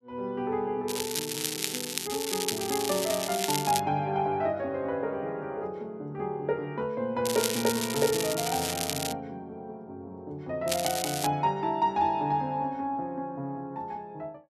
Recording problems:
crackling; from 1 to 4 s, from 7.5 to 9 s and at 11 s; loose cable, SNR 2 dB

